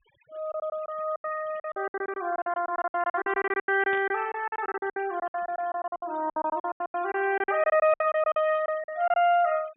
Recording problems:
treble cut off; nothing above 3.6 kHz
denoising artefacts; signal-to-artefact ratio 22 dB
lost packets; 21% of the sound replaced, filled with silence
static burst; at 4 s; peak -9 dB vs average level

